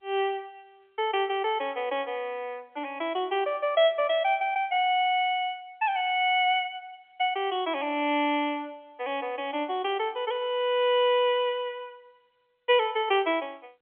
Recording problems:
phone line; 260 Hz to 3.4 kHz, G.711

